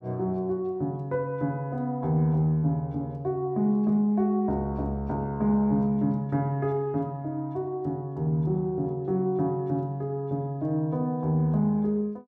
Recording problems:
none

